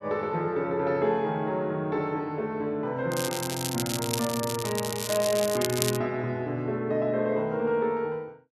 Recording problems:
crackling; from 3 to 6 s; loose cable, SNR 4 dB

